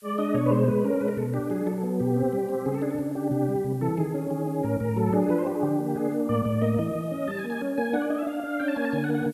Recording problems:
background hiss; slope +2 dB per octave, SNR 28 dB

